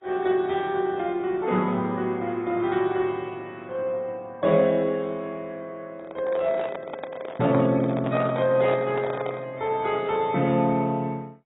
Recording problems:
lossy codec; MP2, then AAC, log-spectral distance 3 dB, nothing above 3.2 kHz
handling noise; from 6 to 9.5 s; peak -1 dB vs average level

